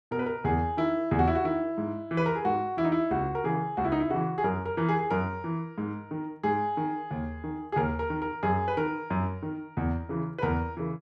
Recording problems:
none

